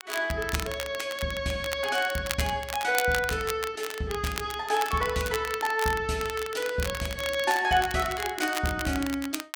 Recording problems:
crackling; vinyl, SNR 9 dB

